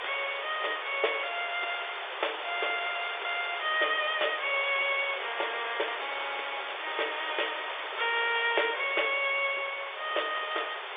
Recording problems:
telephone audio; 340 Hz to 3.6 kHz, G.711
hiss; SNR 6 dB

